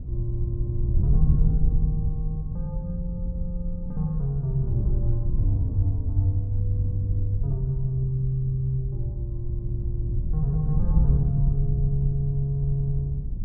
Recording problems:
wind noise; below 82 Hz, SNR 1 dB

